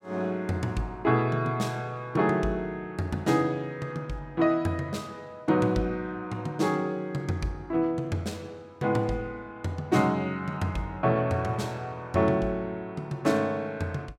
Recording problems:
none

